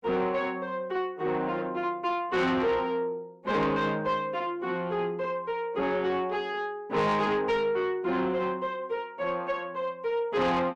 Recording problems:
distortion; soft clipping, signal-to-distortion ratio 10 dB

